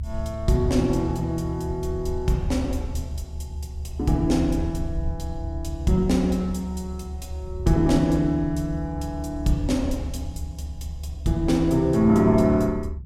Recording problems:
low-frequency rumble; below 76 Hz, strongest tone 72 Hz, SNR 10 dB

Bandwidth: 16 kHz